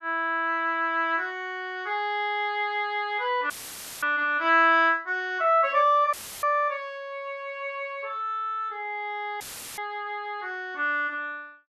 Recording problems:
dropout; at 3.5 s for 0.5 s, at 6 s and at 9.5 s; filled with static

